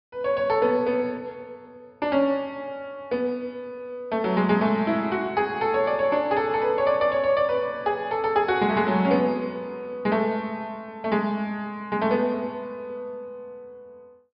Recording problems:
treble missing; nothing above 5.5 kHz

